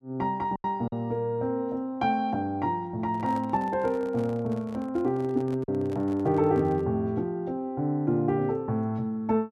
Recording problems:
lost packets; 1.7% of the sound replaced, filled with silence
microphone handling noise; from 3 to 7 s; peak -10 dB vs average level

